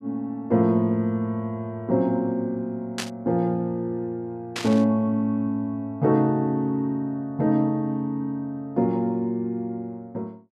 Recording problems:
static burst; at 3 s and at 4.5 s; peak 0 dB vs average level

